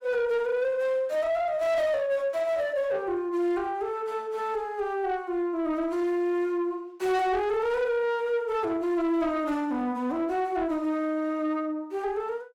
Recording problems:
distorted audio; soft clipping, signal-to-distortion ratio 10 dB

